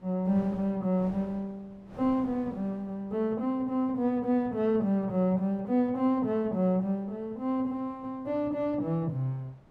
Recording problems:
wind noise; below 670 Hz, SNR 23 dB

